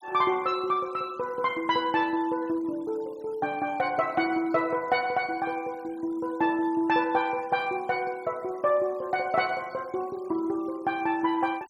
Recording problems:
noise reduction artefacts; signal-to-artefact ratio 25 dB

